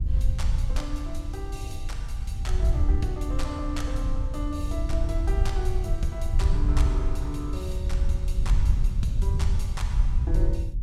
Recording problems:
wind on the microphone; below 70 Hz, SNR -8 dB

